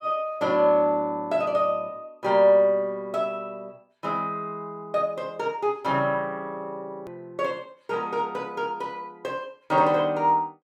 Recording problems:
hard cut with a click; at 7 s

